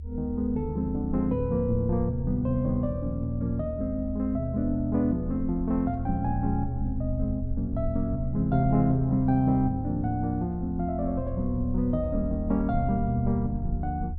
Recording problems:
low-frequency rumble; below 76 Hz, SNR 8 dB

